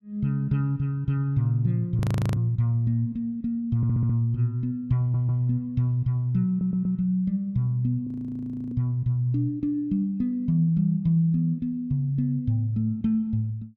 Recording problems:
audio freezing; at 2 s and at 8 s for 0.5 s
audio stuttering; at 4 s, at 5 s and at 6.5 s

